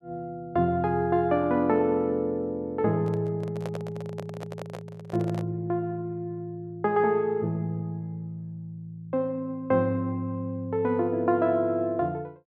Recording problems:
handling noise; from 3 to 5.5 s; peak -5 dB vs average level

